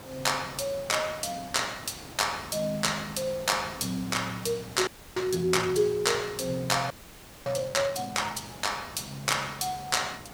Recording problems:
background hiss; slope -4 dB per octave, SNR 15 dB
frozen audio; at 5 s and at 7 s for 0.5 s

